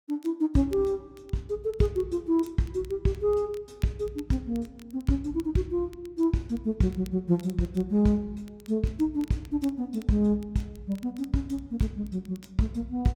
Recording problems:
crackling; vinyl, SNR 28 dB

